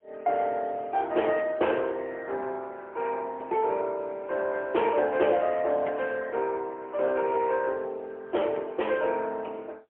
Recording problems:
phone line; 300 Hz to 3.1 kHz, AMR-NB, then MP3

